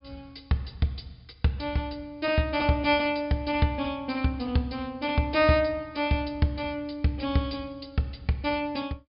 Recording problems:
low-pass filter; nothing above 5.5 kHz

